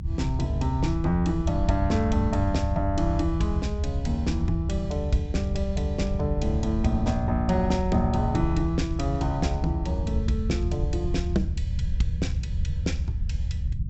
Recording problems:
treble cut off; nothing above 7.8 kHz
low-frequency rumble; below 82 Hz, SNR 1 dB

